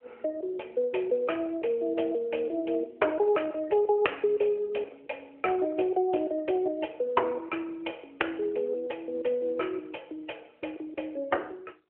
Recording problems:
phone line; 340 Hz to 3.1 kHz, AMR-NB

